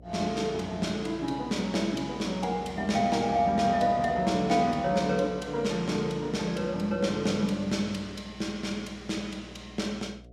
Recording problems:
hum; 60 Hz, harmonics up to 720 Hz, SNR 21 dB

